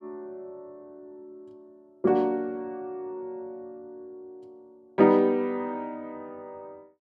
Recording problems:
none

